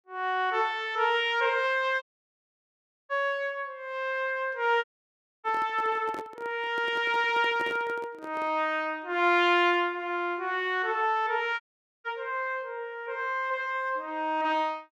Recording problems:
dropout; at 2 s for 1 s, at 5 s for 0.5 s and at 12 s
handling noise; from 5.5 to 8.5 s; peak -7 dB vs average level

